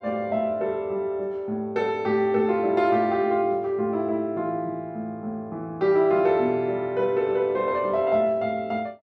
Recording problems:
none

